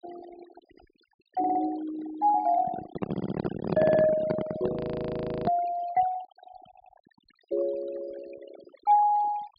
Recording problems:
treble missing; nothing above 4.9 kHz
denoising artefacts; signal-to-artefact ratio 16 dB
stutter; 4 times, first at 1.5 s
handling noise; from 2.5 to 5.5 s; peak +3 dB vs average level
frozen audio; at 5 s for 0.5 s

